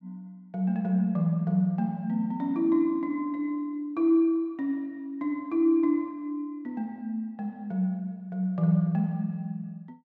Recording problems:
none

